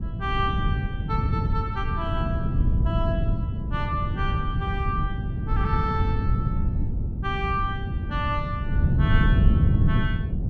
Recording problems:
wind on the microphone; below 140 Hz, SNR -5 dB

